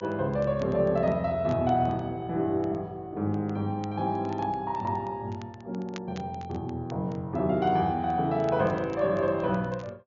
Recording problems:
treble missing; nothing above 7 kHz
crackling; vinyl, SNR 26 dB

